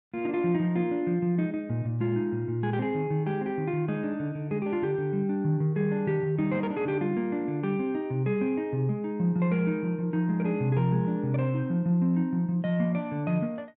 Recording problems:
none

